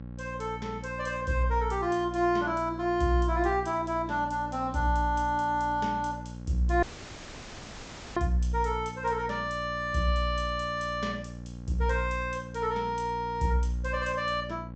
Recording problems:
low-pass filter; nothing above 8 kHz
hum; 60 Hz, harmonics up to 840 Hz, SNR 12 dB
audio cutting out; at 7 s for 1.5 s

